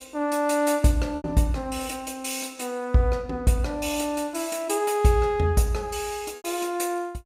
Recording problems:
packet loss; 2% of the sound replaced, filled with repeated pitch periods

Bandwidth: 15.5 kHz